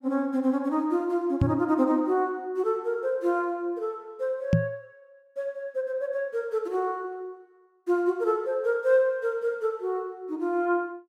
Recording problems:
knock on the microphone; at 1.5 s and at 4.5 s; peak +9 dB vs average level

